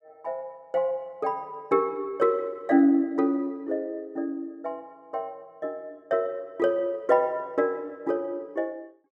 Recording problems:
none

